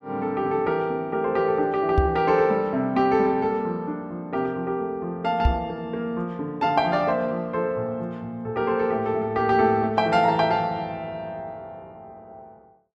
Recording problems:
microphone bump; at 2 s and at 5.5 s; peak +6 dB vs average level

